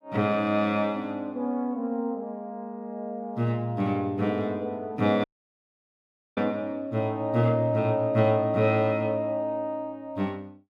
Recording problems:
dropout; at 5 s for 1 s

